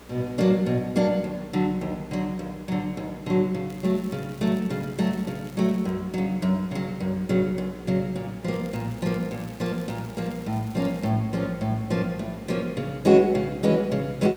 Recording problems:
mains hum; 60 Hz, harmonics up to 600 Hz, SNR 23 dB
hiss; slope -5 dB per octave, SNR 23 dB
crackle; from 3.5 to 6 s and from 8.5 to 11 s; loose cable, SNR 25 dB

